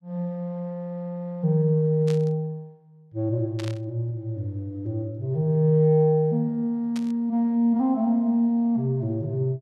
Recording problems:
burst of static; at 2 s, at 3.5 s and at 7 s; peak -10 dB vs average level

